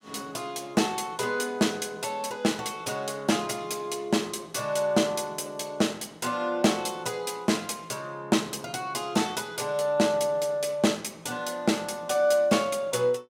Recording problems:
none

